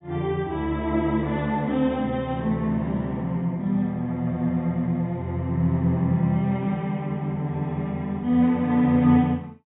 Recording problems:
treble missing; nothing above 4 kHz

